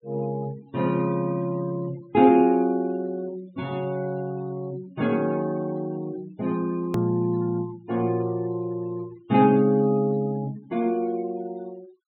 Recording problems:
treble cut off; nothing above 4.1 kHz
noise reduction artefacts; signal-to-artefact ratio 24 dB
edit click; at 7 s

